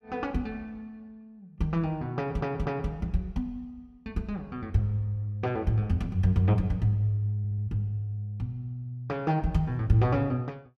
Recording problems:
audio stuttering; at 2 s and at 7.5 s

